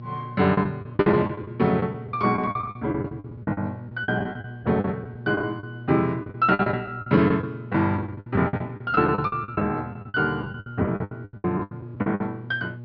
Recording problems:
treble missing; nothing above 5.5 kHz
electrical hum; 60 Hz, harmonics up to 600 Hz, SNR 14 dB
lost packets; 18% of the sound replaced, filled with the last packet

